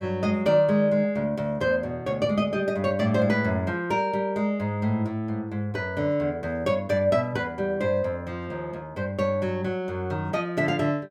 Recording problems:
none

